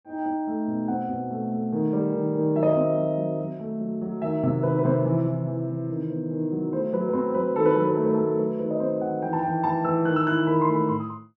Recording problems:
none

